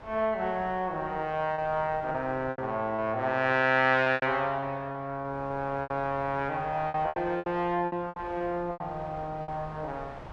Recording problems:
wind noise; below 1 kHz, SNR 19 dB
lost packets; 9% of the sound replaced, filled with repeated pitch periods

